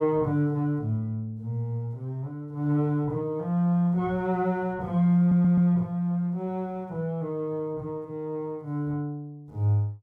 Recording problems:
audio stuttering; at 5 s

